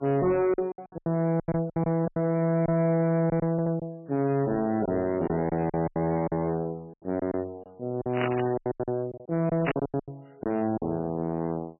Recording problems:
codec artefacts; MP3, log-spectral distance 2 dB
distortion; soft clipping, signal-to-distortion ratio 6 dB
lost packets; 13% of the sound replaced, filled with silence
stutter; at 3.5 s
static burst; at 8 s and at 9.5 s; peak +1 dB vs average level

